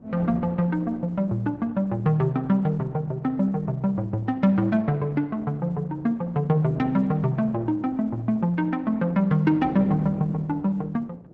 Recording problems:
codec artefacts; Opus, log-spectral distance 2 dB
wind on the microphone; below 360 Hz, SNR 18 dB

